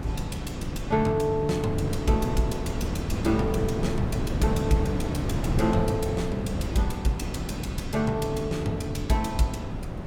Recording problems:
wind on the microphone; below 290 Hz, SNR 2 dB

